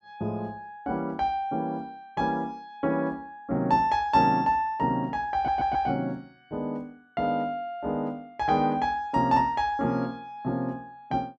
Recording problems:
audio stuttering; at 5.5 s

